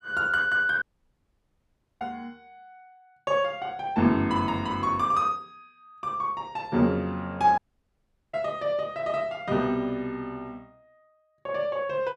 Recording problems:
dropout; at 1 s for 1 s and at 7.5 s for 1 s

